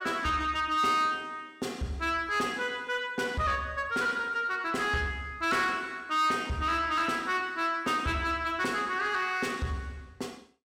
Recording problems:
distortion; soft clipping, signal-to-distortion ratio 12 dB

